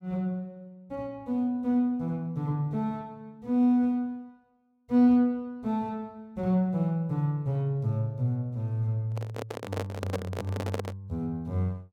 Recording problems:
handling noise; from 9 to 11 s; peak +1 dB vs average level

